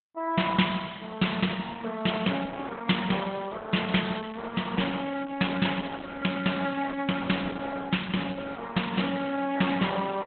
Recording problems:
lossy compression; Opus, log-spectral distance 6 dB, nothing above 3.9 kHz

